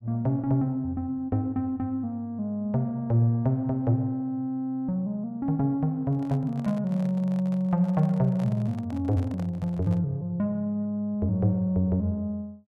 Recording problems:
microphone handling noise; from 6 to 10 s; peak -11 dB vs average level

